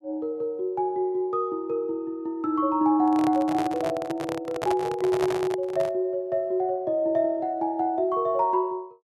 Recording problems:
microphone handling noise; from 3 to 6 s; peak 0 dB vs average level

